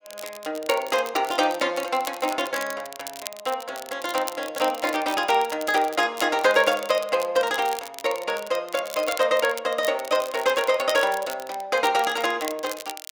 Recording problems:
crackle; vinyl, SNR 14 dB

